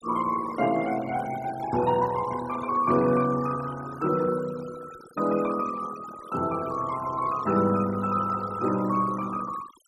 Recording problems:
denoising artefacts; signal-to-artefact ratio 16 dB

